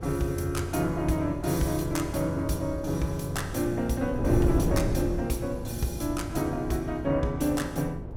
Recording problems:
wind noise; below 290 Hz, SNR 6 dB

